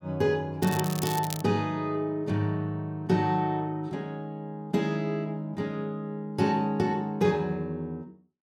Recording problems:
crackle; at 0.5 s; loose cable, SNR 8 dB

